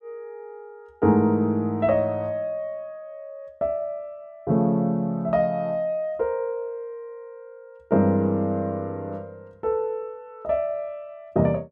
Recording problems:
none

